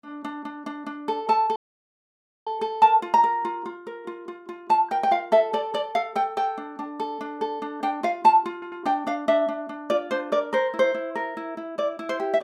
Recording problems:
audio cutting out; at 1.5 s for 1 s
stutter; at 8.5 s

